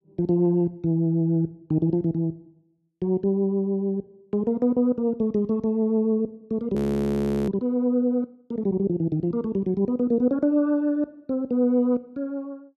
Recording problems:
audio freezing; at 7 s for 0.5 s

